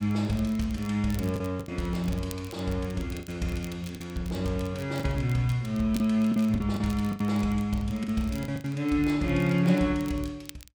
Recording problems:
crackling; vinyl, SNR 22 dB
lost packets; 6% of the sound replaced, filled with the last packet

